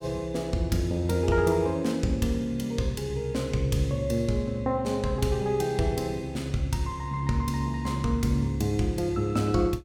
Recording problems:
none

